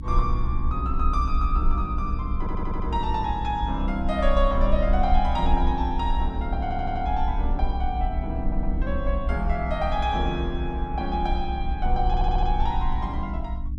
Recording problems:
hum; 50 Hz, harmonics up to 300 Hz, SNR 9 dB
rumble; below 60 Hz, SNR 1 dB
audio stuttering; 4 times, first at 2.5 s

